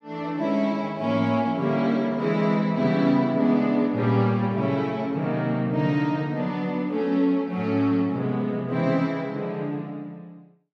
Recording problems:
none

